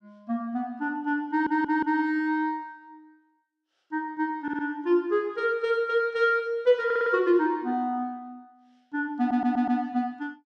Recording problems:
stutter; 4 times, first at 1.5 s

